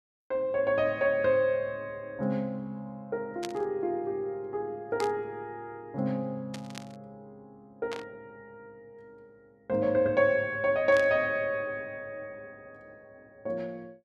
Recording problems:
burst of static; 5 times, first at 3.5 s; peak -4 dB vs average level

